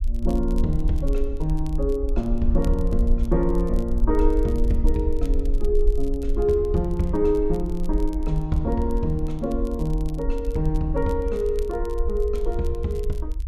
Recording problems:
rumble; below 48 Hz, SNR 3 dB
crackling; vinyl, SNR 27 dB

